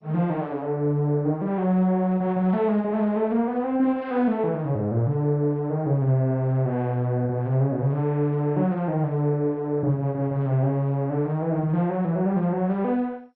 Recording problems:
lossy compression; MP2, log-spectral distance 2 dB

